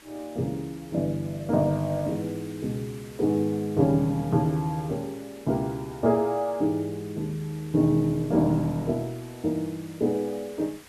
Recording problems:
background hiss; slope -2 dB per octave, SNR 22 dB

